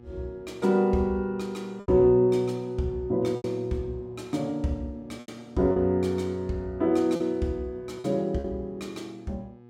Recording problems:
hum; 60 Hz, harmonics up to 1.3 kHz, SNR 23 dB
lost packets; 4% of the sound replaced, filled with repeated pitch periods

